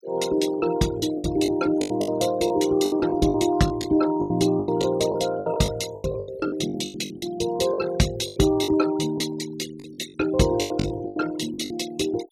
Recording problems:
noise reduction artefacts; signal-to-artefact ratio 16 dB
packet loss; 15% of the sound replaced, filled with the last packet

